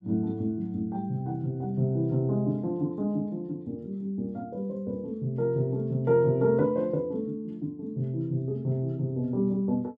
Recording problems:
none

